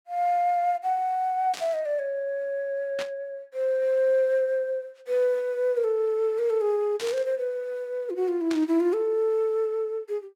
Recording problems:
static burst; 4 times, first at 1.5 s; peak -6 dB vs average level

